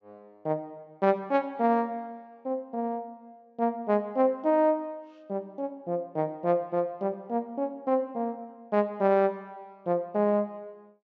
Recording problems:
low-pass filter; nothing above 8 kHz

